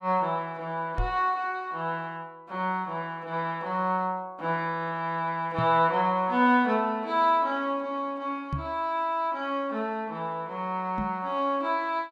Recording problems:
microphone thump; 4 times, first at 1 s; peak +1 dB vs average level

